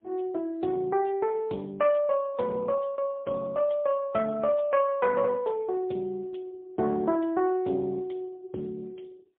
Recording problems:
phone line; 240 Hz to 3.5 kHz, AMR-NB, then MP3

